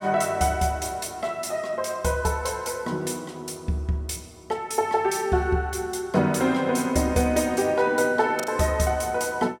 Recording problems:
packet loss; 0.8% of the sound replaced, filled with the last packet

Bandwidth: 17 kHz